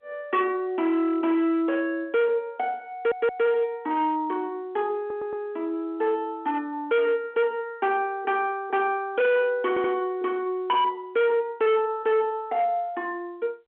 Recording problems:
telephone audio; 260 Hz to 3.4 kHz, G.711
distorted audio; hard clipping, signal-to-distortion ratio 8 dB
stutter; at 3 s, at 5 s and at 9.5 s

